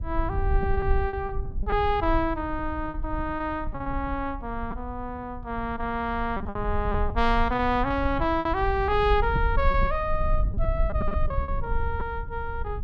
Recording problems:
low-frequency rumble; below 64 Hz, SNR 4 dB
packet loss; 9% of the sound replaced, filled with repeated pitch periods

